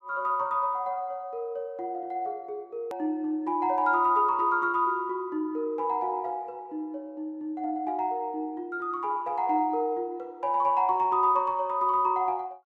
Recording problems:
hard cut with a click; at 3 s

